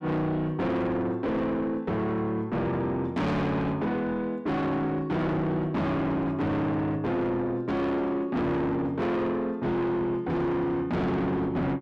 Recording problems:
distorted audio; soft clipping, signal-to-distortion ratio 7 dB

